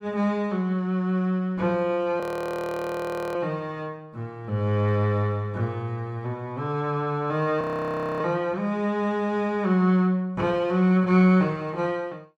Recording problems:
audio freezing; at 2 s for 1 s and at 7.5 s for 0.5 s

